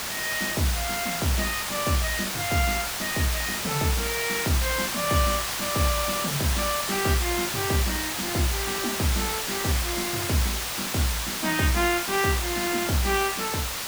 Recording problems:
background hiss; slope 0 dB per octave, SNR 1 dB

